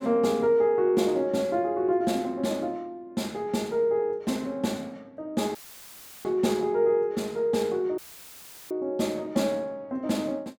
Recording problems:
audio cutting out; at 5.5 s for 0.5 s and at 8 s for 0.5 s; filled with static

